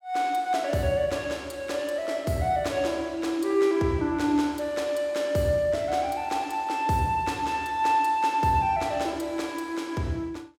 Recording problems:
none

